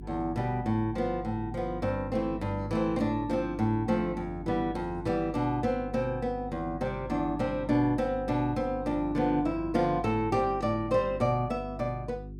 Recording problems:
hum; 50 Hz, harmonics up to 400 Hz, SNR 13 dB

